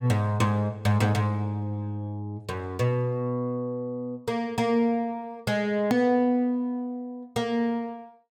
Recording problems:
hard cut with a click; at 6 s

